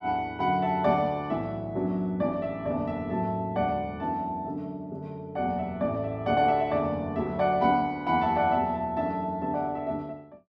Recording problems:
none

